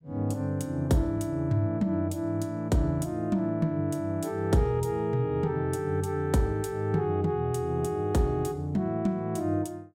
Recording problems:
none

